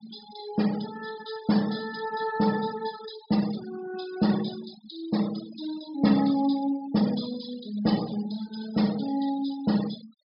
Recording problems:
low-pass filter; nothing above 5.5 kHz
noise reduction artefacts; signal-to-artefact ratio 13 dB

